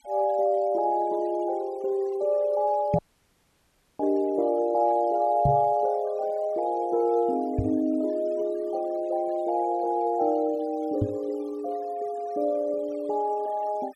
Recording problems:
noise reduction artefacts; signal-to-artefact ratio 27 dB
microphone bump; 4 times, first at 3 s; peak +4 dB vs average level
audio cutting out; at 3 s for 1 s

